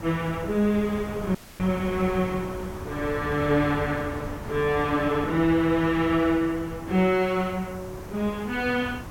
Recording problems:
background hiss; SNR 27 dB
wind noise; below 720 Hz, SNR 12 dB
dropout; at 1.5 s

